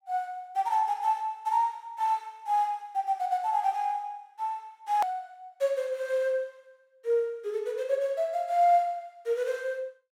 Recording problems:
click at an edit; at 5 s

